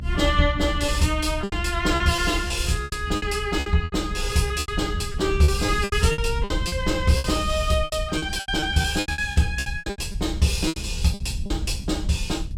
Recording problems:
rumble; below 76 Hz, SNR 7 dB
packet loss; 15% of the sound replaced, filled with repeated pitch periods

